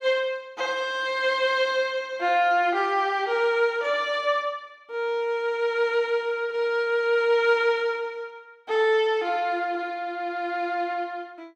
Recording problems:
none

